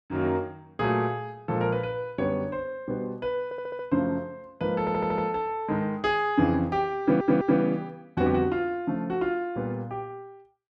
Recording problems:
stutter; at 3.5 s, at 5 s and at 7 s

